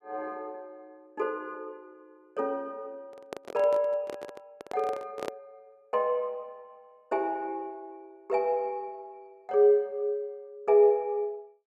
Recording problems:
handling noise; from 3 to 5.5 s; peak -2 dB vs average level

